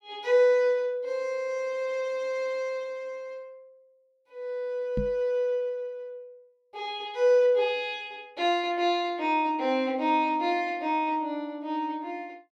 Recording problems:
microphone bump; at 5 s; peak 0 dB vs average level

